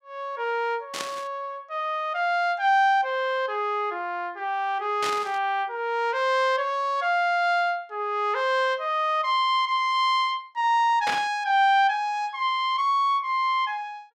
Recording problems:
burst of static; at 1 s, at 5 s and at 11 s; peak -1 dB vs average level

